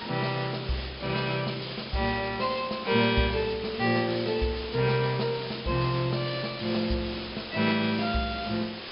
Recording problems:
treble missing; nothing above 5.5 kHz
background hiss; slope -2 dB per octave, SNR 10 dB

